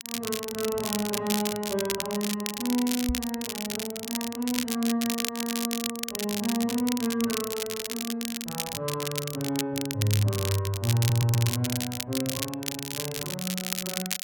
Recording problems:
crackling; vinyl, SNR 3 dB
microphone bump; at 3 s; peak +3 dB vs average level
audio stuttering; at 11 s

